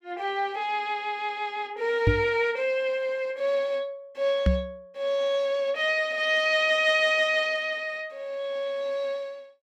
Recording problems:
knock on the microphone; at 2 s and at 4.5 s; peak +6 dB vs average level

